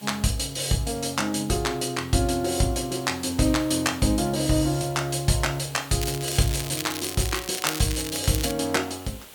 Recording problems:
hiss; SNR 20 dB
crackle; from 6 to 8.5 s; loose cable, SNR 7 dB

